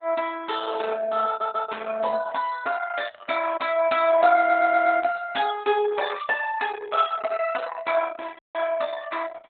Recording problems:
lossy compression; Opus, log-spectral distance 5 dB, nothing above 3.8 kHz
audio stuttering; at 1.5 s and at 4.5 s
audio cutting out; at 8.5 s

